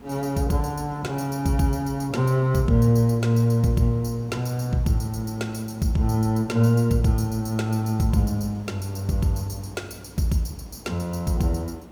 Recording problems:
hum; 60 Hz, harmonics up to 420 Hz, SNR 28 dB
hiss; slope -8 dB per octave, SNR 23 dB

